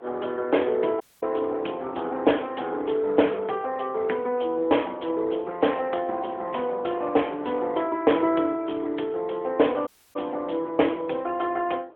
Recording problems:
phone line; 260 Hz to 3.4 kHz, AMR-NB
wind on the microphone; below 780 Hz, SNR 19 dB
dropout; at 1 s and at 10 s

